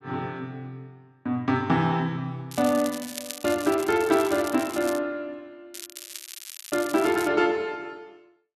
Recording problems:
crackle; from 2.5 to 5 s and from 5.5 to 7.5 s; loose cable, SNR 13 dB

